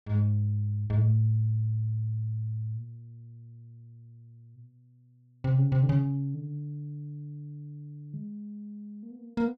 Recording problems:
none

